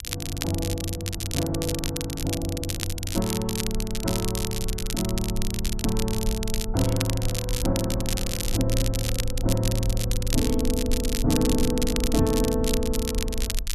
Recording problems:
rumble; below 52 Hz, SNR 6 dB
crackle; vinyl, SNR 4 dB

